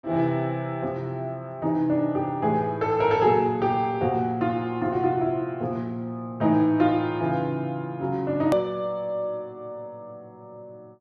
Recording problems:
edit click; at 8.5 s

